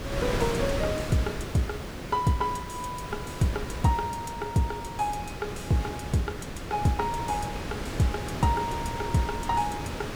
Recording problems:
background hiss; SNR 25 dB
wind on the microphone; below 1.2 kHz, SNR 5 dB

